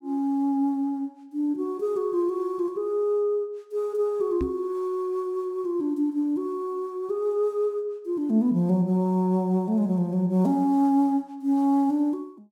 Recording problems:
knock on the microphone; at 4.5 s; peak -1 dB vs average level

